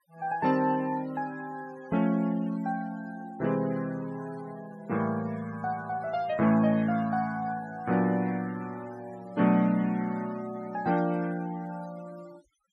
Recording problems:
denoising artefacts; signal-to-artefact ratio 20 dB

